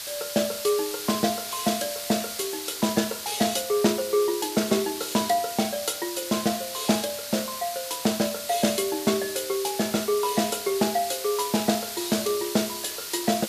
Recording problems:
background hiss; slope +3 dB per octave, SNR 6 dB

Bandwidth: 14.5 kHz